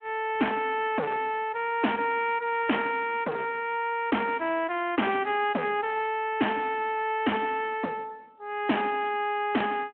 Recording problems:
telephone audio; 240 Hz to 3.1 kHz, Speex
distortion; hard clipping, signal-to-distortion ratio 7 dB

